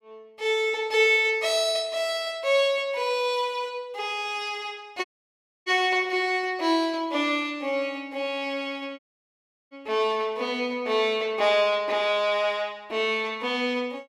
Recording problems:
dropout; at 5 s for 0.5 s and at 9 s for 0.5 s

